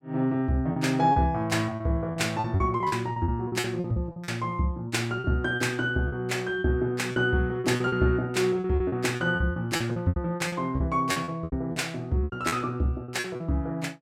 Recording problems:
packet loss; 14% of the sound replaced, filled with repeated pitch periods

